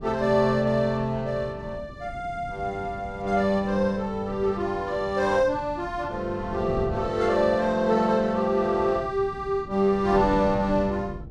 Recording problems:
wind on the microphone; below 210 Hz, SNR 15 dB

